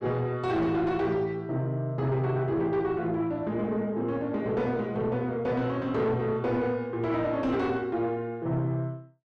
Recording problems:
distorted audio; soft clipping, signal-to-distortion ratio 11 dB

